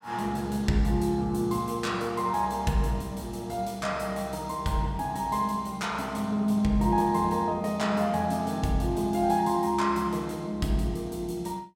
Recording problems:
none

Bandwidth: 16 kHz